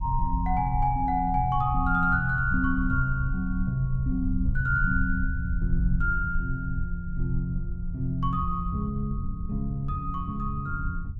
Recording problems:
low-frequency rumble; below 76 Hz, SNR 5 dB

